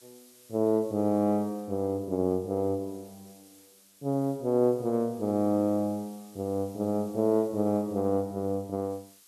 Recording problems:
hiss; slope +2 dB per octave, SNR 26 dB

